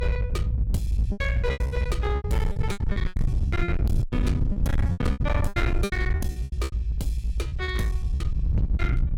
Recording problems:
distortion; hard clipping, uneven, signal-to-distortion ratio 6 dB
rumble; below 98 Hz, SNR -5 dB
packet loss; 17% of the sound replaced, filled with repeated pitch periods

